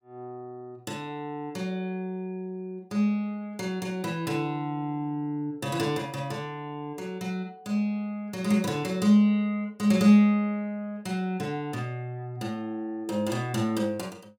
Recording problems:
none

